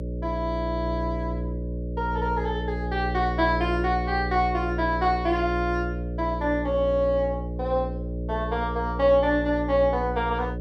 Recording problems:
hum; 60 Hz, harmonics up to 600 Hz, SNR 5 dB

